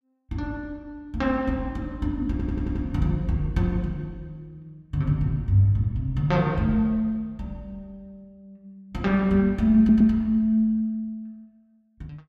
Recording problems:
stutter; at 2.5 s and at 10 s

